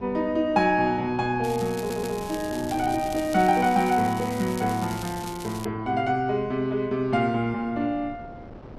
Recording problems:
wind on the microphone; below 470 Hz, SNR 19 dB
crackle; from 1.5 to 5.5 s; loose cable, SNR 16 dB
audio stuttering; at 2 s

